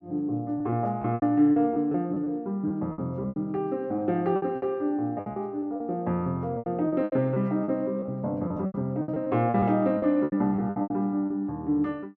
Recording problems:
packet loss; 14% of the sound replaced, filled with repeated pitch periods

